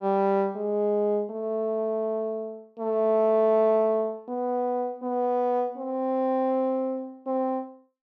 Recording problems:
none

